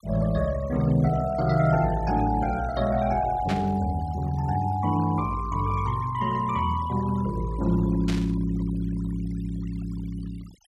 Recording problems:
noise reduction artefacts; signal-to-artefact ratio 19 dB
static burst; at 3.5 s and at 8 s; peak -4 dB vs average level

